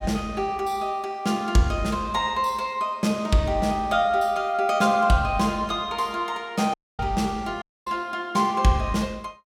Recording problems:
audio cutting out; at 6.5 s and at 7.5 s

